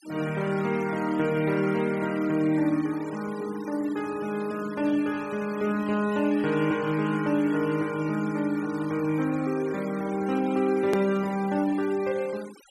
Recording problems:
denoising artefacts; signal-to-artefact ratio 18 dB
hard cut with a click; at 11 s

